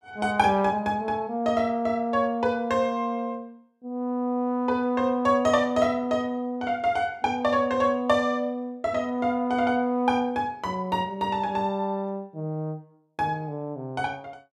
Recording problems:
none

